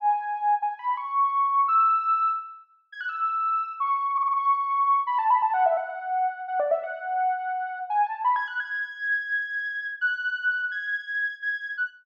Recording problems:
audio stuttering; at 4 s

